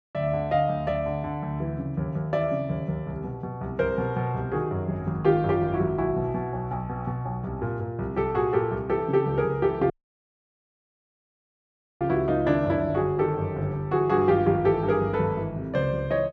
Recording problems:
dropout; at 10 s for 2 s

